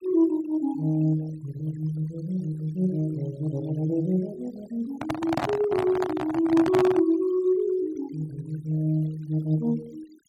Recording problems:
noise reduction artefacts; signal-to-artefact ratio 22 dB
handling noise; from 5 to 7 s; peak +3 dB vs average level

